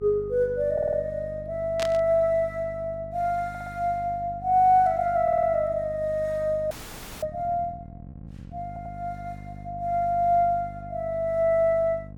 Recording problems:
electrical hum; 50 Hz, harmonics up to 600 Hz, SNR 17 dB
stutter; 4 times, first at 0.5 s
burst of static; at 2 s; peak -3 dB vs average level
frozen audio; at 6.5 s for 0.5 s

